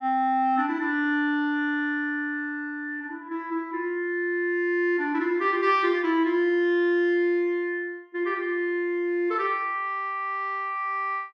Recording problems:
none

